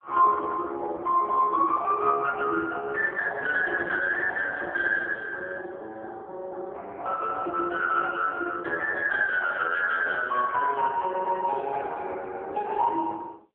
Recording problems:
telephone audio; 300 Hz to 2.8 kHz, AMR-NB

